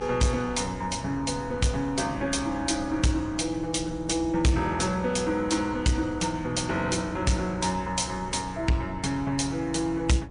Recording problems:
codec artefacts; MP3, log-spectral distance 3 dB, nothing above 9.5 kHz
distorted audio; soft clipping, signal-to-distortion ratio 11 dB
electrical hum; 60 Hz, harmonics up to 600 Hz, SNR 17 dB
wind on the microphone; below 240 Hz, SNR 17 dB

